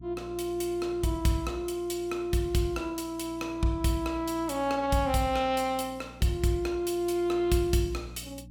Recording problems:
hum; 60 Hz, harmonics up to 300 Hz, SNR 20 dB

